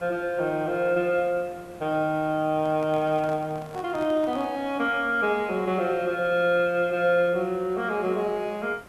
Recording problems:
background hiss; slope -6 dB per octave, SNR 23 dB
handling noise; from 2.5 to 4.5 s; peak -11 dB vs average level

